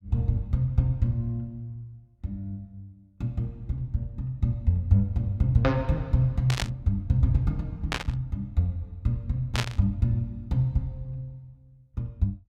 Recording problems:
static burst; at 6.5 s, at 8 s and at 9.5 s; peak +4 dB vs average level

